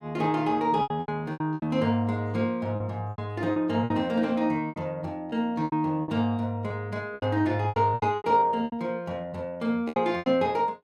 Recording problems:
lost packets; 14% of the sound replaced, filled with repeated pitch periods

